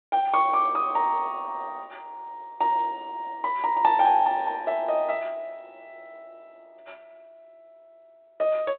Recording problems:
telephone audio; 280 Hz to 4 kHz, G.726

